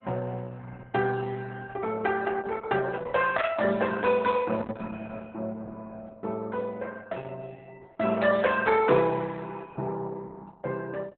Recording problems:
lossy codec; Opus, log-spectral distance 4 dB, nothing above 3.8 kHz

